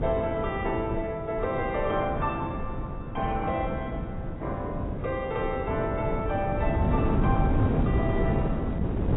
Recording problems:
lossy compression; AAC, log-spectral distance 2 dB, nothing above 3.2 kHz
wind on the microphone; below 270 Hz, SNR 0 dB

